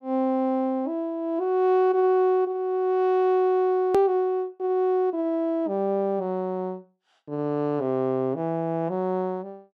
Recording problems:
click at an edit; at 4 s

